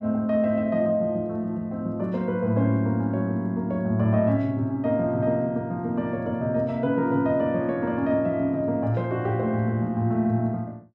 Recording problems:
none

